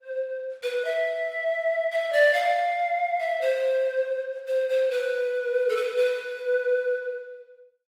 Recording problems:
codec artefacts; Opus, log-spectral distance 2 dB, nothing above 19.5 kHz

